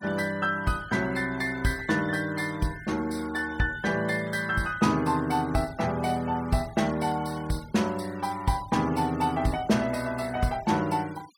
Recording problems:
noise reduction artefacts; signal-to-artefact ratio 21 dB

